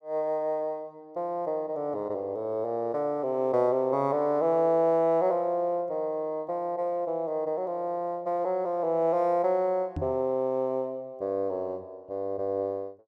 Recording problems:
microphone bump; at 10 s; peak -2 dB vs average level

